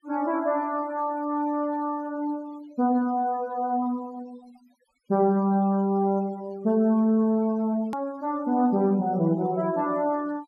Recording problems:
denoising artefacts; signal-to-artefact ratio 26 dB
click at an edit; at 8 s

